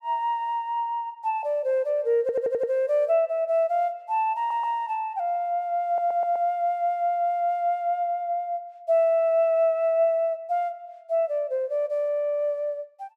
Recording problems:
stutter; at 2 s, at 4.5 s and at 6 s

